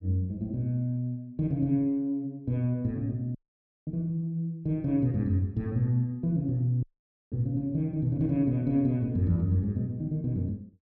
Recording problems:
audio cutting out; at 3.5 s for 0.5 s and at 7 s

